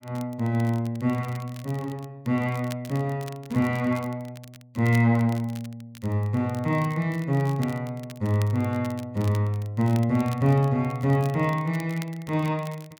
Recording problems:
crackling; vinyl, SNR 22 dB

